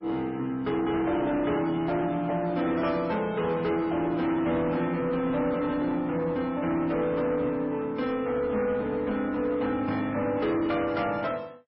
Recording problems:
lossy compression; MP3, log-spectral distance 2 dB, nothing above 4.8 kHz
distorted audio; soft clipping, signal-to-distortion ratio 12 dB

